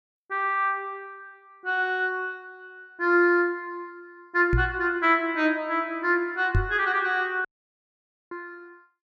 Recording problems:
microphone bump; at 4.5 s and at 6.5 s; peak +4 dB vs average level
dropout; at 7.5 s for 1 s

